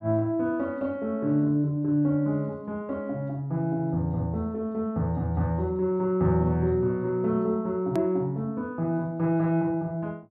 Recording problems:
click at an edit; at 8 s

